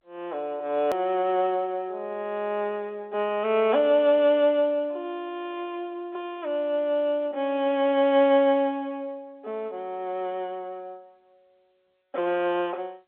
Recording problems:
phone line; 240 Hz to 3.6 kHz, G.711
edit click; at 1 s

